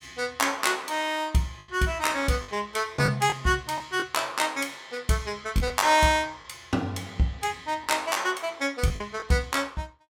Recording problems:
lost packets; 4% of the sound replaced, filled with the last packet

